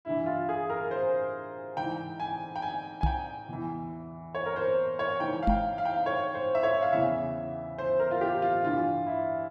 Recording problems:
microphone thump; at 3 s and at 5.5 s; peak +5 dB vs average level

